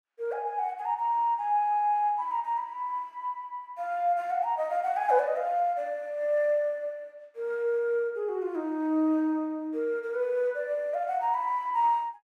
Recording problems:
none

